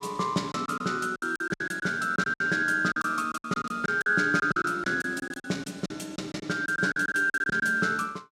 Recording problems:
lost packets; 15% of the sound replaced, filled with silence

